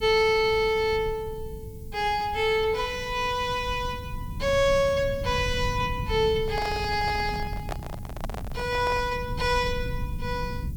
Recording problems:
hiss; slope +3 dB per octave, SNR 27 dB
rumble; below 140 Hz, SNR 11 dB
microphone handling noise; from 6.5 to 9 s; peak -3 dB vs average level

